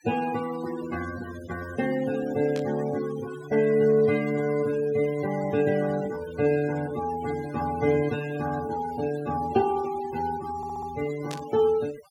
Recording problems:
denoising artefacts; signal-to-artefact ratio 15 dB
burst of static; at 2.5 s and at 11 s; peak -8 dB vs average level
audio stuttering; at 11 s

